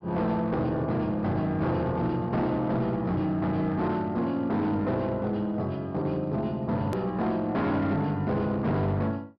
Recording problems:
treble missing; nothing above 5.5 kHz
distortion; hard clipping, signal-to-distortion ratio 12 dB
hard cut with a click; at 7 s

